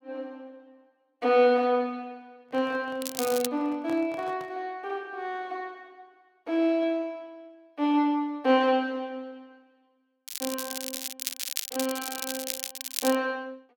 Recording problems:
handling noise; from 2.5 to 4.5 s; peak -9 dB vs average level
crackling; at 3 s and from 10 to 13 s; loose cable, SNR 5 dB

